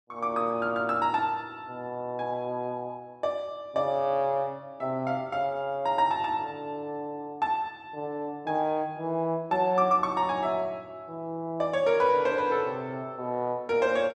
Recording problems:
none

